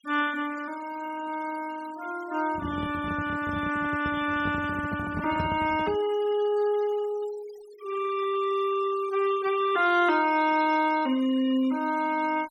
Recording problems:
denoising artefacts; signal-to-artefact ratio 17 dB
handling noise; from 2.5 to 6 s; peak -1 dB vs average level

